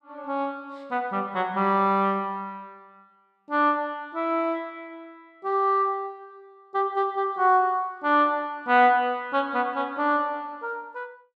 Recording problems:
none

